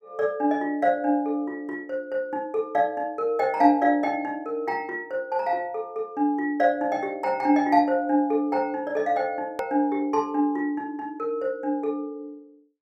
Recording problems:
click at an edit; at 9.5 s

